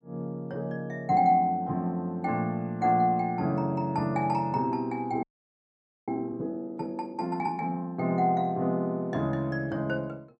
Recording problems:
audio freezing; at 5 s for 1 s

